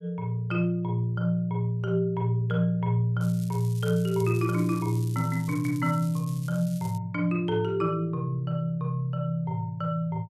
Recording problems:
crackling; from 3 to 7 s; loose cable, SNR 20 dB

